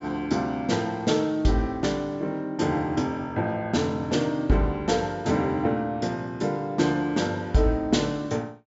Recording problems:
treble missing; nothing above 8 kHz

